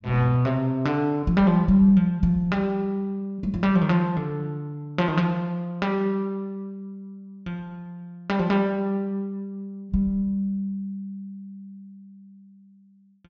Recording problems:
treble cut off; nothing above 8 kHz

